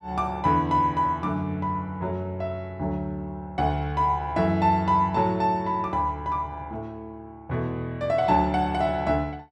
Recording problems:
none

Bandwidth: 12 kHz